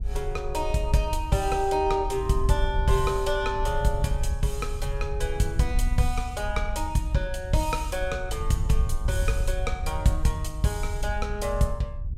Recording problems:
wind noise; below 62 Hz, SNR 4 dB

